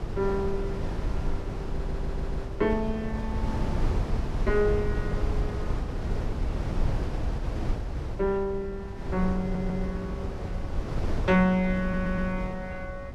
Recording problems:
wind on the microphone; below 140 Hz, SNR 3 dB
stutter; at 1.5 s, at 9.5 s and at 12 s

